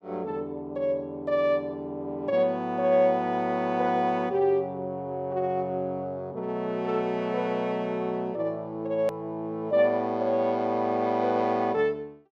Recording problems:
hard cut with a click; at 9 s

